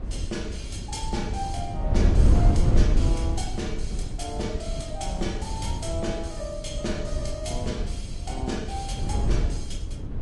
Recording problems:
lossy codec; MP3, log-spectral distance 2 dB, nothing above 11 kHz
hum; 50 Hz, harmonics up to 500 Hz, SNR 17 dB
wind on the microphone; below 96 Hz, SNR -5 dB

